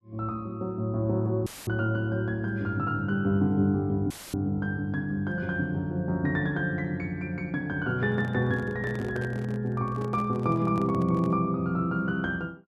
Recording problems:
dropout; at 1.5 s and at 4 s; filled with static
microphone handling noise; from 8 to 11 s; peak -8 dB vs average level

